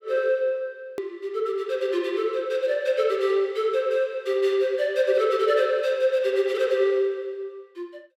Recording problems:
edit click; at 1 s

